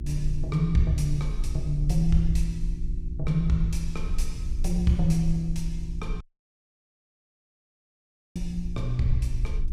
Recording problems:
hum; 60 Hz, harmonics up to 360 Hz, SNR 13 dB
rumble; below 50 Hz, SNR 5 dB
audio cutting out; at 6 s for 2 s

